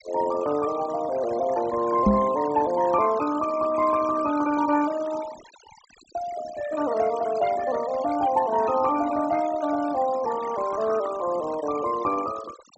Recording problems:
low-pass filter; nothing above 7.9 kHz
noise reduction artefacts; signal-to-artefact ratio 16 dB
knock on the microphone; at 2 s; peak +7 dB vs average level

